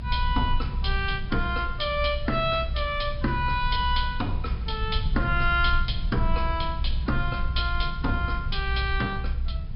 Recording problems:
treble missing; nothing above 5.5 kHz
hiss; slope -4 dB per octave, SNR 22 dB
rumble; below 64 Hz, strongest tone 24 Hz, SNR 3 dB

